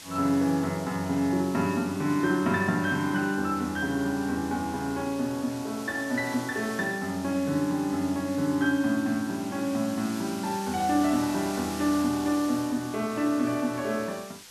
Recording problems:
background hiss; slope +1 dB per octave, SNR 15 dB

